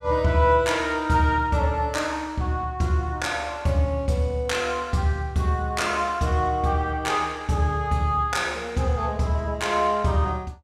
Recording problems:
none

